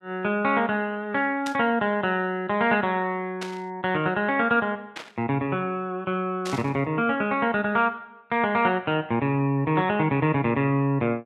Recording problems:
static burst; 4 times, first at 1.5 s; peak -6 dB vs average level

